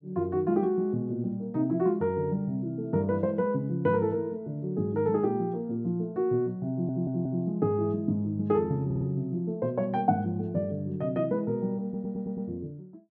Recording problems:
audio stuttering; at 6.5 s, at 9 s and at 12 s

